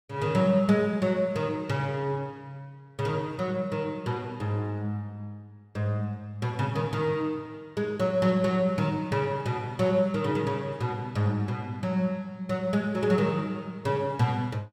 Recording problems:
none

